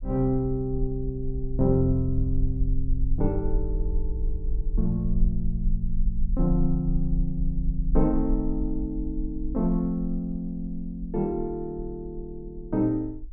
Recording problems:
low-frequency rumble; below 44 Hz, strongest tone 20 Hz, SNR 4 dB

